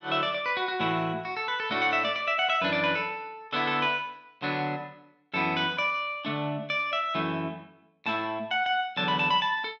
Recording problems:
none

